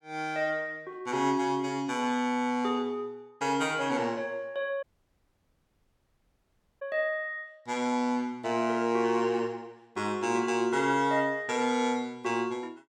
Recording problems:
audio cutting out; at 5 s for 2 s

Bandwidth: 17 kHz